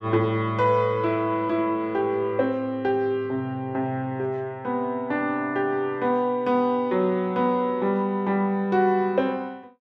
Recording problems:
none

